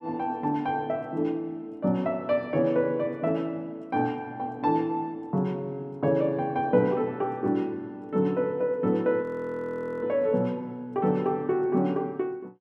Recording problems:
audio freezing; at 9 s for 1 s

